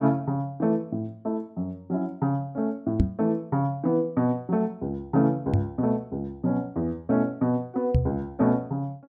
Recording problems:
microphone thump; at 3 s, at 5.5 s and at 8 s; peak +8 dB vs average level

